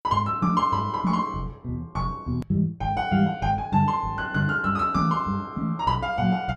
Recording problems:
hard cut with a click; at 2.5 s

